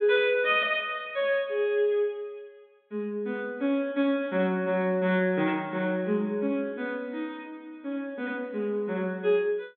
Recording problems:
low-pass filter; nothing above 4 kHz

